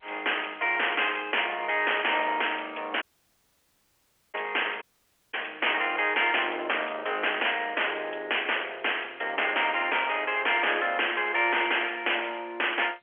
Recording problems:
phone line; 370 Hz to 3.3 kHz, G.711
distortion; soft clipping, signal-to-distortion ratio 9 dB
dropout; at 3 s for 1.5 s and at 5 s for 0.5 s

